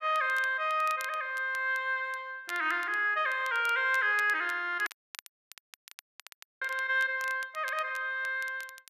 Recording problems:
crackle; vinyl, SNR 20 dB
audio cutting out; at 5 s for 1.5 s

